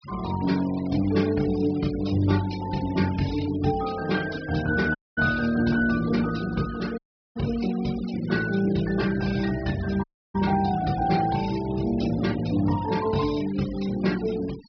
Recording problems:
treble cut off; nothing above 5.5 kHz
denoising artefacts; signal-to-artefact ratio 17 dB
dropout; at 5 s, at 7 s and at 10 s

